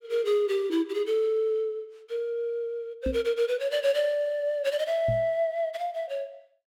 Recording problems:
knock on the microphone; at 3 s and at 5 s; peak 0 dB vs average level

